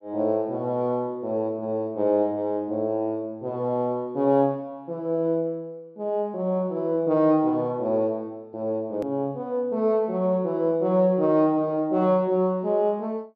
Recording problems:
hard cut with a click; at 9 s

